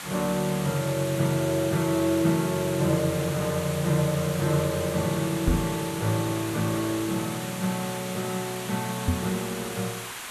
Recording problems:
background hiss; SNR 8 dB
microphone bump; at 5.5 s and at 9 s; peak +5 dB vs average level

